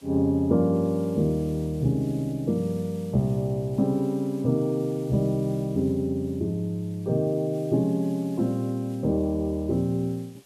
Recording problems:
hiss; SNR 27 dB

